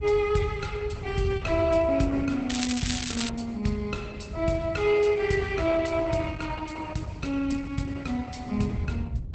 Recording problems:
lossy compression; Opus, log-spectral distance 4 dB, nothing above 8.2 kHz
rumble; below 98 Hz, SNR 8 dB
crackle; at 2.5 s; loose cable, SNR 4 dB

